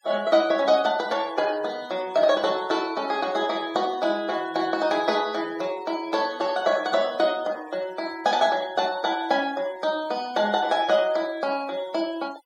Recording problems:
denoising artefacts; signal-to-artefact ratio 20 dB

